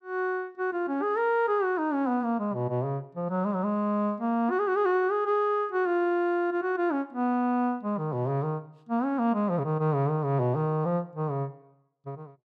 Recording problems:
none

